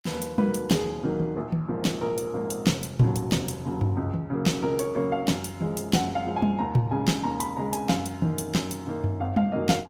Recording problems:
lossy compression; Opus, log-spectral distance 3 dB, nothing above 19 kHz

